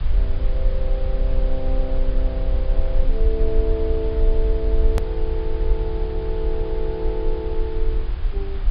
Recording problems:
treble cut off; nothing above 5.1 kHz
background hiss; SNR 13 dB
low-frequency rumble; below 46 Hz, strongest tone 24 Hz, SNR -4 dB
hard cut with a click; at 5 s

